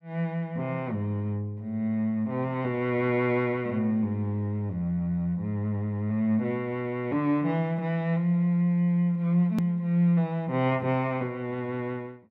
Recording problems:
click at an edit; at 9.5 s

